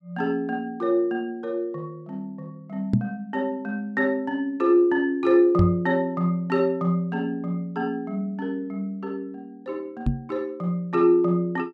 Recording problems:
microphone thump; at 3 s, at 5.5 s and at 10 s; peak +6 dB vs average level

